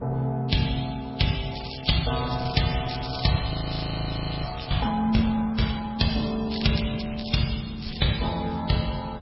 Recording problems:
lossy compression; MP3, then Vorbis, log-spectral distance 10 dB, nothing above 5.5 kHz
wind noise; below 200 Hz, SNR 18 dB
crackling; from 1.5 to 4.5 s, at 6.5 s and at 8 s; loose cable, SNR 10 dB
audio freezing; at 3.5 s for 1 s

